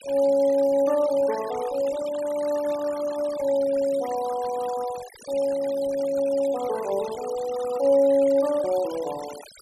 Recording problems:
denoising artefacts; signal-to-artefact ratio 17 dB

